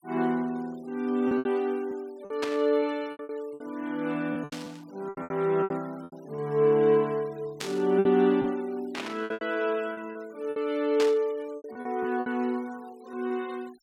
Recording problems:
noise reduction artefacts; signal-to-artefact ratio 26 dB
packet loss; 10% of the sound replaced, filled with repeated pitch periods
static burst; 5 times, first at 2.5 s; peak -1 dB vs average level

